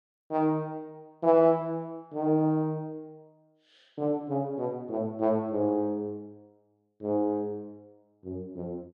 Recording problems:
none

